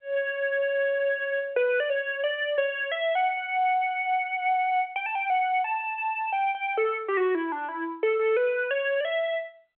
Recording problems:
telephone audio; 320 Hz to 3.4 kHz, G.711

